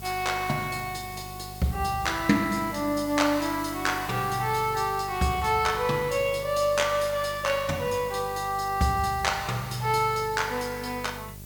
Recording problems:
electrical hum; 50 Hz, harmonics up to 800 Hz, SNR 17 dB
background hiss; slope +2 dB per octave, SNR 17 dB

